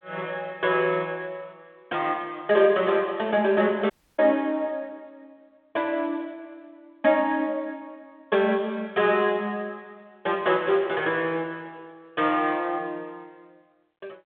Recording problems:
phone line; 280 Hz to 3.6 kHz, G.726
dropout; at 4 s

